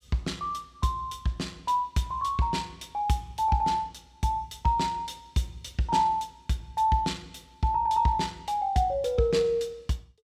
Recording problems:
none

